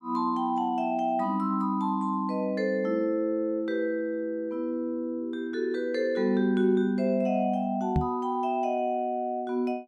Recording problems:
microphone thump; at 8 s; peak +5 dB vs average level

